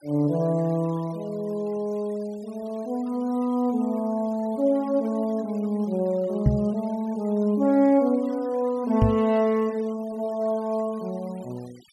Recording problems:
noise reduction artefacts; signal-to-artefact ratio 26 dB
microphone thump; at 6.5 s and at 9 s; peak +9 dB vs average level

